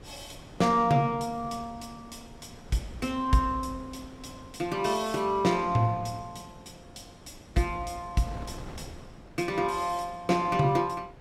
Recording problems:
wind noise; below 530 Hz, SNR 20 dB

